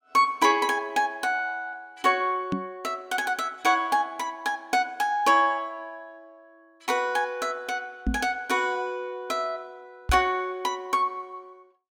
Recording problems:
knock on the microphone; at 2.5 s, at 8 s and at 10 s; peak +2 dB vs average level

